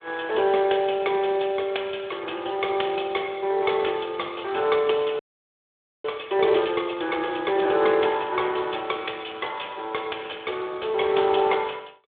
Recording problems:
telephone audio; 340 Hz to 3.6 kHz, Speex
audio freezing; at 5 s for 1 s

